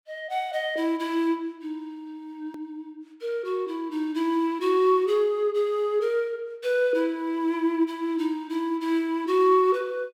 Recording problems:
hard cut with a click; at 2.5 s

